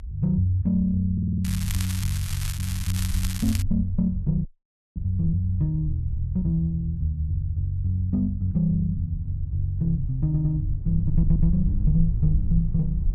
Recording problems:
low-frequency rumble; below 72 Hz, SNR 13 dB
wind noise; below 64 Hz, SNR 8 dB
audio stuttering; at 1 s, at 10 s and at 11 s
crackling; from 1.5 to 3.5 s; loose cable, SNR 10 dB
dropout; at 4.5 s for 0.5 s

